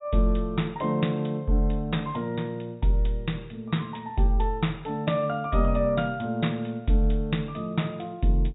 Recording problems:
low-pass filter; nothing above 4 kHz

